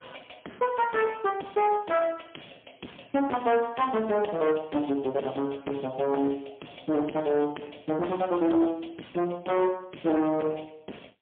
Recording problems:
telephone audio; 220 Hz to 3.3 kHz, AMR-NB, then MP3
distorted audio; soft clipping, signal-to-distortion ratio 10 dB

